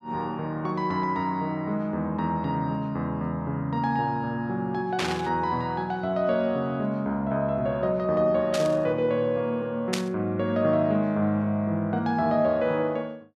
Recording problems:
burst of static; at 5 s, at 8.5 s and at 10 s; peak +1 dB vs average level

